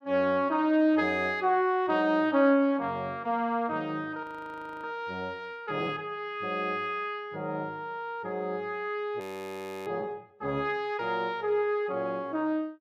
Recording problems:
audio freezing; at 4 s for 0.5 s and at 9 s for 0.5 s

